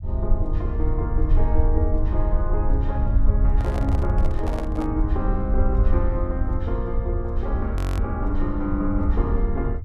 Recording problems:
low-frequency rumble; below 70 Hz, SNR -4 dB
microphone handling noise; from 3.5 to 5 s; peak -1 dB vs average level
audio freezing; at 8 s

